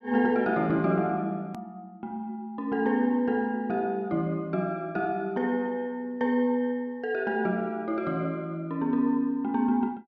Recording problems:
click at an edit; at 1.5 s

